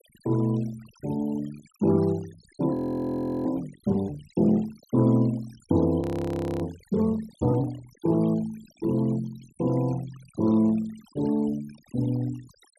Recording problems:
noise reduction artefacts; signal-to-artefact ratio 24 dB
frozen audio; at 2.5 s for 0.5 s and at 6 s for 0.5 s

